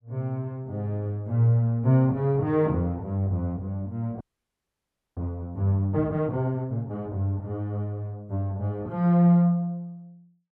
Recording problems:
frozen audio; at 4 s for 1 s

